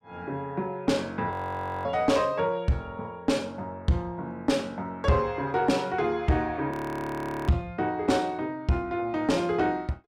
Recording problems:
distorted audio; soft clipping, signal-to-distortion ratio 10 dB
frozen audio; at 1.5 s for 0.5 s and at 6.5 s for 1 s

